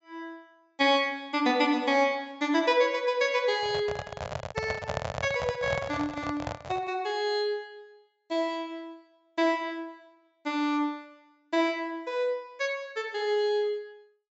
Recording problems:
low-pass filter; nothing above 8 kHz
microphone handling noise; from 3.5 to 7 s; peak +1 dB vs average level

